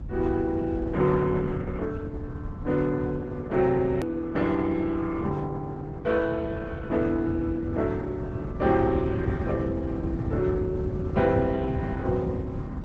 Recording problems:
codec artefacts; Opus, log-spectral distance 2 dB, nothing above 13.1 kHz
low-frequency rumble; below 140 Hz, SNR 4 dB
click at an edit; at 4 s

